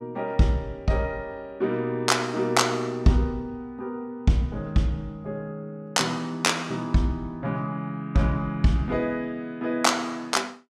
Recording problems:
none

